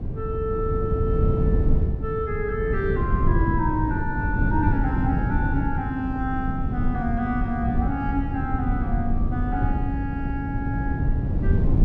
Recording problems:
wind on the microphone; below 150 Hz, SNR -2 dB

